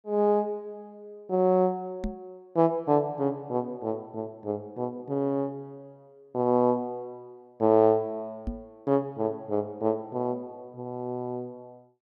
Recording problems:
knock on the microphone; at 2 s and at 8.5 s; peak -1 dB vs average level

